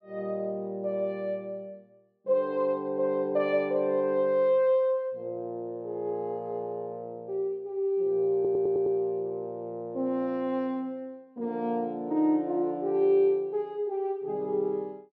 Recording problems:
audio stuttering; at 8.5 s

